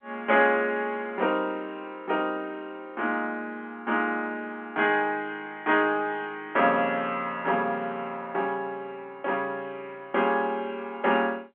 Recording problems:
telephone audio; 240 Hz to 3.3 kHz, G.711

